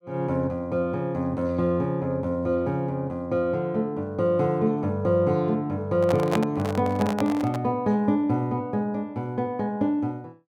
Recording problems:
handling noise; from 6 to 7.5 s; peak +2 dB vs average level

